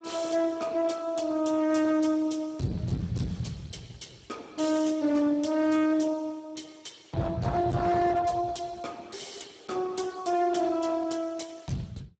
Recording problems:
lossy compression; Speex, log-spectral distance 5 dB, nothing above 7.8 kHz
distortion; hard clipping, signal-to-distortion ratio 7 dB

